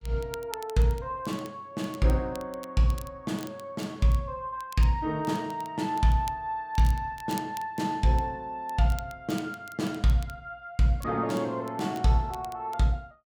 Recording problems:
crackling; vinyl, SNR 21 dB

